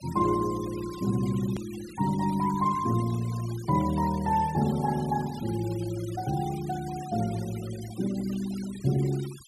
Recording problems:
noise reduction artefacts; signal-to-artefact ratio 17 dB
hard cut with a click; at 1.5 s

